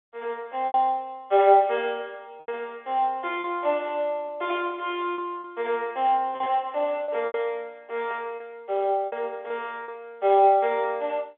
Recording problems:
telephone audio; 300 Hz to 3.8 kHz, G.711
packet loss; 6% of the sound replaced, filled with repeated pitch periods

